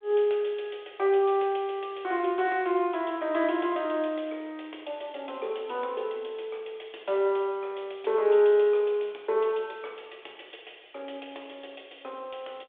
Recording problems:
telephone audio; 340 Hz to 3.6 kHz, G.726

